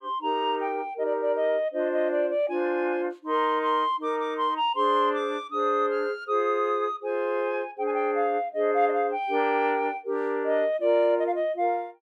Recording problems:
none

